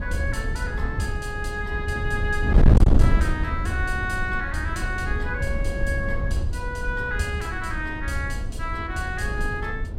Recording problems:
distortion; hard clipping, signal-to-distortion ratio 10 dB
wind noise; below 110 Hz, SNR -2 dB

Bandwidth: 16 kHz